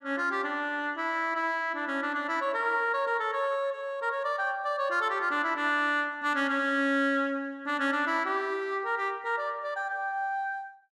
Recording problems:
none

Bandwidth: 14.5 kHz